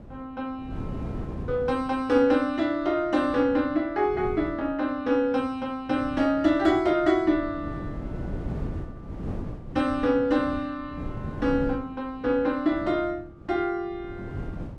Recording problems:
wind noise; below 270 Hz, SNR 13 dB

